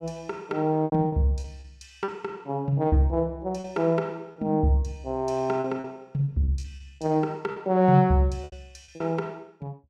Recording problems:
packet loss; 8% of the sound replaced, filled with repeated pitch periods

